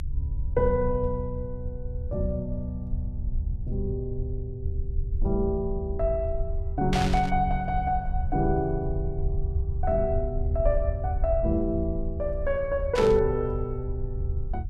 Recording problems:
low-frequency rumble; below 76 Hz, SNR 4 dB
burst of static; at 7 s and at 13 s; peak +1 dB vs average level

